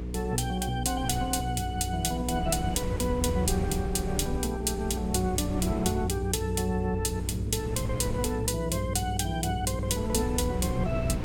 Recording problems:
hum; 60 Hz, harmonics up to 480 Hz, SNR 6 dB
wind on the microphone; below 190 Hz, SNR 10 dB

